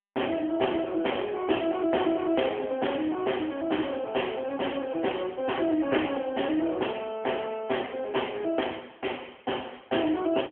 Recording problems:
telephone audio; 260 Hz to 3.3 kHz, AMR-NB

